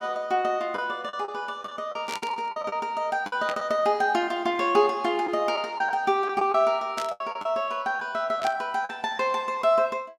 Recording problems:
lost packets; 7% of the sound replaced, filled with the last packet
static burst; 4 times, first at 2 s; peak -3 dB vs average level

